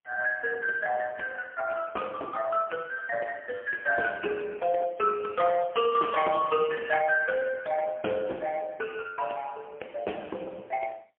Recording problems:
phone line; 340 Hz to 2.8 kHz, AMR-NB, then MP3
crackle; at 4 s and from 5 to 7 s; loose cable, SNR 28 dB

